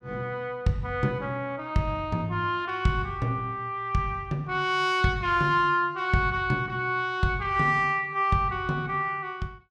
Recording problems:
none

